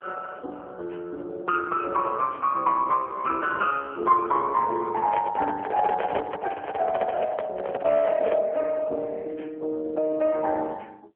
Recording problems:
telephone audio; 280 Hz to 3.3 kHz, AMR-NB
handling noise; from 5 to 8.5 s; peak 0 dB vs average level

